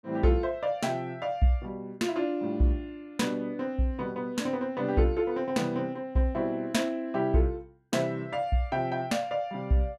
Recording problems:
none

